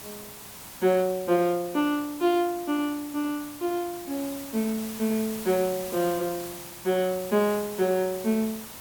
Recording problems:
background hiss; SNR 12 dB

